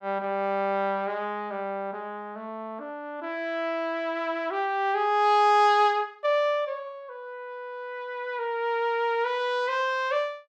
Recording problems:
none

